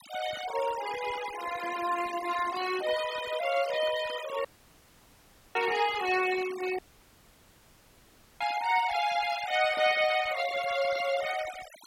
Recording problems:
noise reduction artefacts; signal-to-artefact ratio 12 dB
audio cutting out; at 4.5 s for 1 s and at 7 s for 1.5 s

